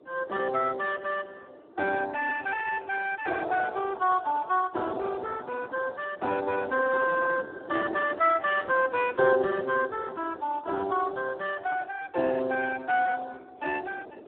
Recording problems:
telephone audio; 300 Hz to 2.2 kHz, Speex
wind on the microphone; below 580 Hz, SNR 19 dB

